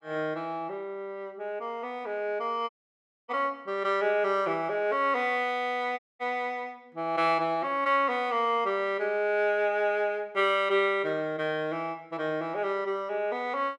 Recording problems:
dropout; at 2.5 s for 0.5 s and at 6 s

